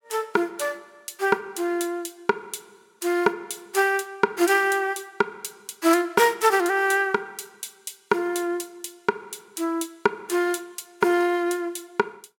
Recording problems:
none

